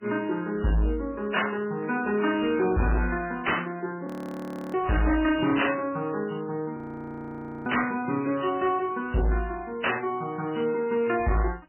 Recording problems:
lossy compression; MP3, log-spectral distance 4 dB, nothing above 2.7 kHz
distortion; hard clipping, signal-to-distortion ratio 7 dB
audio freezing; at 4 s for 0.5 s and at 7 s for 1 s

